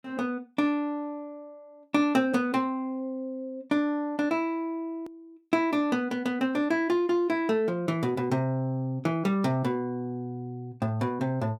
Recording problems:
hard cut with a click; at 5 s

